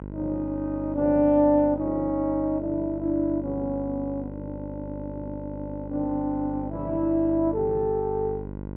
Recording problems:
hum; 50 Hz, harmonics up to 1.1 kHz, SNR 11 dB

